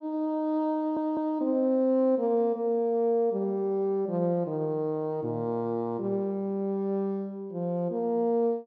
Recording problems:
audio stuttering; at 1 s

